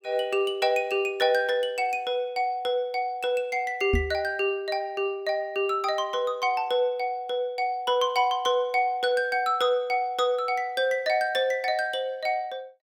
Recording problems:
knock on the microphone; at 4 s; peak +4 dB vs average level

